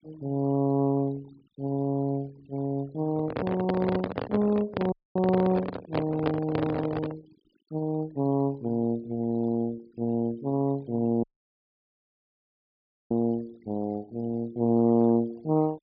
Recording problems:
treble missing; nothing above 5.1 kHz
denoising artefacts; signal-to-artefact ratio 23 dB
microphone handling noise; from 3 to 7 s; peak +3 dB vs average level
audio cutting out; at 5 s and at 11 s for 2 s

